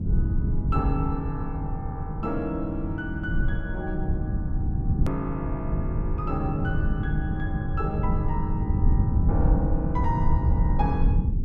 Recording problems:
rumble; below 120 Hz, SNR -4 dB
edit click; at 5 s

